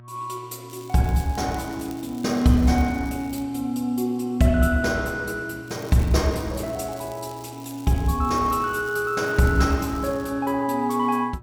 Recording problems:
hum; 60 Hz, harmonics up to 1.3 kHz, SNR 21 dB
crackle; from 0.5 to 3.5 s and from 5.5 to 10 s; loose cable, SNR 23 dB

